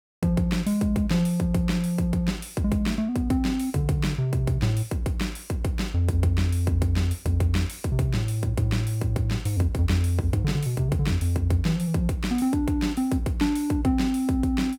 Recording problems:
none

